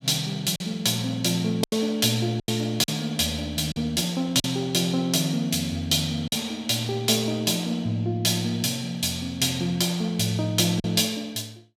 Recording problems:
packet loss; 3% of the sound replaced, filled with silence

